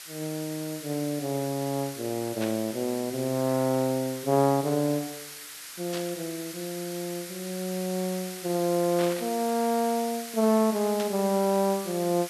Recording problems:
background hiss; SNR 11 dB
burst of static; 4 times, first at 2.5 s; peak -5 dB vs average level

